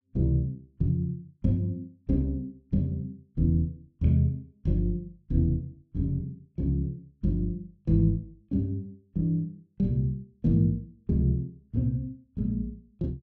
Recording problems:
none

